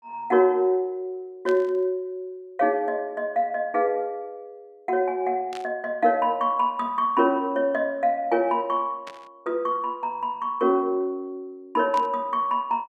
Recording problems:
burst of static; 4 times, first at 1.5 s; peak -11 dB vs average level

